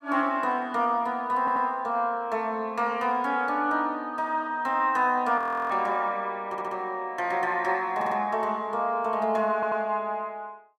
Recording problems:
stutter; 4 times, first at 1.5 s
audio freezing; at 5.5 s

